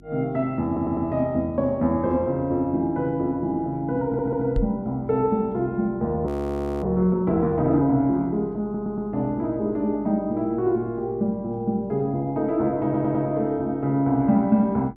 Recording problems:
hum; 50 Hz, harmonics up to 350 Hz, SNR 24 dB
stutter; 4 times, first at 0.5 s
microphone thump; at 4.5 s; peak +1 dB vs average level
frozen audio; at 6.5 s for 0.5 s

